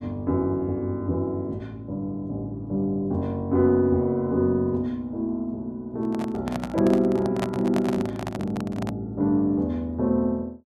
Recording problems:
handling noise; from 6 to 9 s; peak 0 dB vs average level

